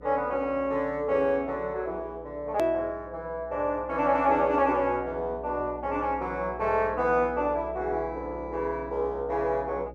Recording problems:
hum; 60 Hz, harmonics up to 540 Hz, SNR 18 dB
hard cut with a click; at 2.5 s

